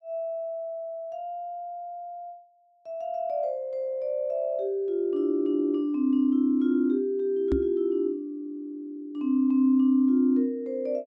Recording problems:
knock on the microphone; at 7.5 s; peak +3 dB vs average level

